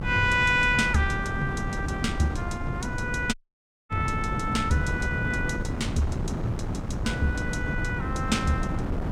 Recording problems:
wind noise; below 260 Hz, SNR 4 dB
audio cutting out; at 3.5 s for 0.5 s

